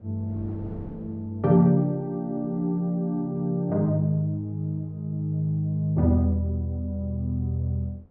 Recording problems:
wind on the microphone; below 340 Hz, SNR 24 dB

